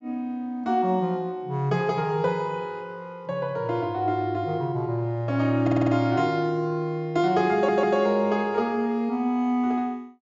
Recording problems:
treble cut off; nothing above 7.4 kHz
audio stuttering; at 5.5 s and at 7.5 s

